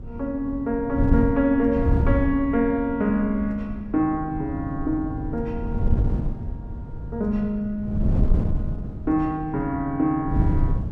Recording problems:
wind noise; below 130 Hz, SNR 4 dB

